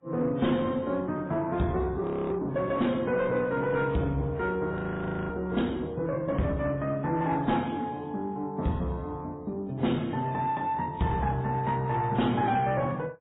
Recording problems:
codec artefacts; MP3, then AAC, log-spectral distance 2 dB, nothing above 3.8 kHz
distortion; soft clipping, signal-to-distortion ratio 11 dB
audio freezing; at 2 s and at 4.5 s for 0.5 s

